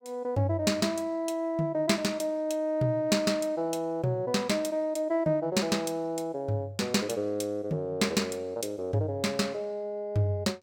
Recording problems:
none

